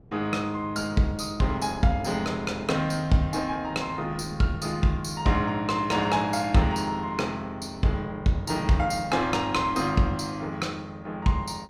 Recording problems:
wind on the microphone; below 310 Hz, SNR 18 dB

